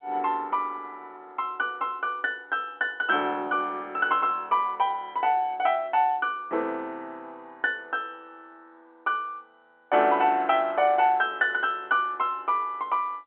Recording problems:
telephone audio; 260 Hz to 3.6 kHz, G.711

